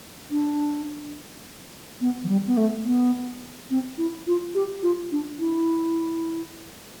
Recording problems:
hiss; slope -3 dB per octave, SNR 18 dB

